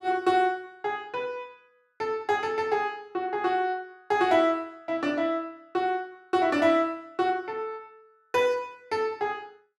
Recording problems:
none

